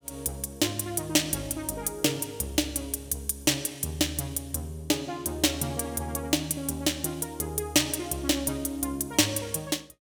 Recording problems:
none

